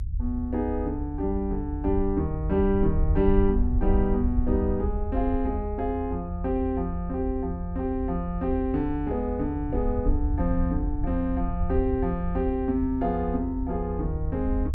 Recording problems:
low-frequency rumble; below 78 Hz, SNR 4 dB

